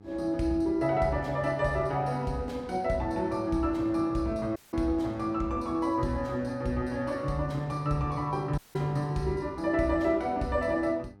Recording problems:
hum; 50 Hz, harmonics up to 1.3 kHz, SNR 23 dB
dropout; at 4.5 s and at 8.5 s

